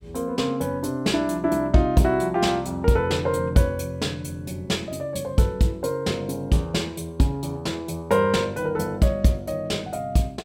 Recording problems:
none

